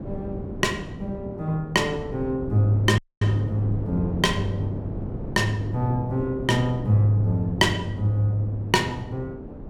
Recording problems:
wind noise; below 320 Hz, SNR 10 dB
dropout; at 3 s

